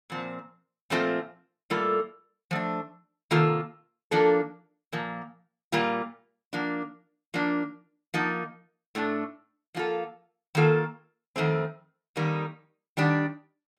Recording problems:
none

